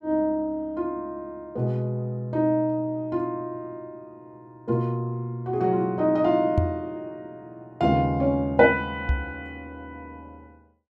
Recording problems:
microphone thump; at 6.5 s and at 9 s; peak +6 dB vs average level

